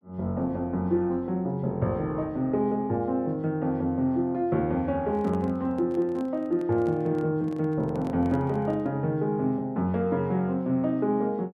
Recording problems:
microphone handling noise; from 5 to 9 s; peak -10 dB vs average level

